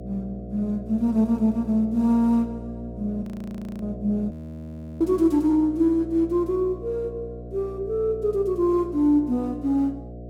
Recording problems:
hum; 60 Hz, harmonics up to 720 Hz, SNR 14 dB
audio freezing; at 3 s for 0.5 s and at 4.5 s for 0.5 s

